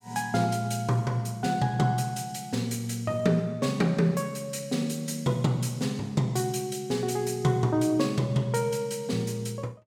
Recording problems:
none

